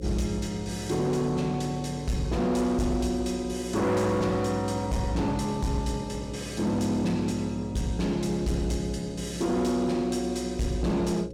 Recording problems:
distorted audio; hard clipping, signal-to-distortion ratio 11 dB
hum; 60 Hz, harmonics up to 540 Hz, SNR 13 dB

